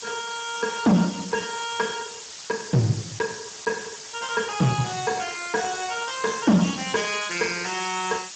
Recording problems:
lossy compression; Speex, log-spectral distance 19 dB, nothing above 7.6 kHz
distortion; hard clipping, uneven, signal-to-distortion ratio 11 dB
background hiss; slope +3 dB per octave, SNR 11 dB

